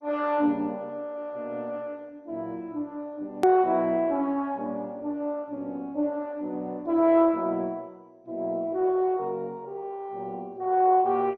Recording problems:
codec artefacts; MP2, log-spectral distance 2 dB, nothing above 13.1 kHz
edit click; at 3.5 s

